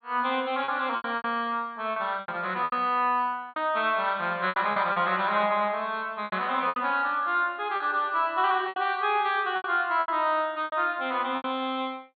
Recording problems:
treble missing; nothing above 4.5 kHz
packet loss; 10% of the sound replaced, filled with repeated pitch periods

